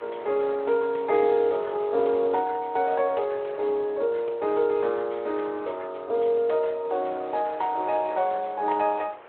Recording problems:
telephone audio; 340 Hz to 3.3 kHz, Speex
wind on the microphone; below 1.4 kHz, SNR 21 dB

